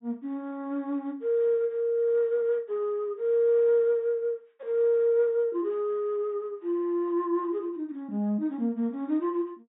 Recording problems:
low-pass filter; nothing above 3.8 kHz

